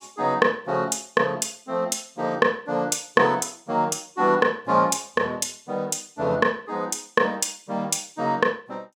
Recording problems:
none

